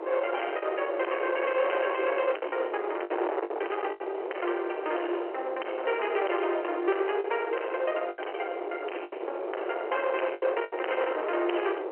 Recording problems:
phone line; 320 Hz to 3.1 kHz, G.711
distorted audio; soft clipping, signal-to-distortion ratio 7 dB
wind on the microphone; below 830 Hz, SNR 5 dB
packet loss; 7% of the sound replaced, filled with the last packet

